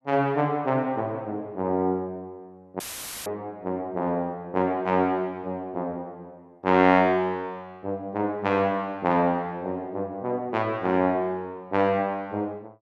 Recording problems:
audio cutting out; at 3 s; filled with static

